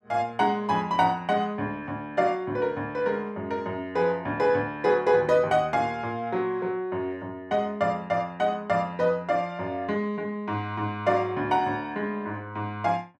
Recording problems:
none

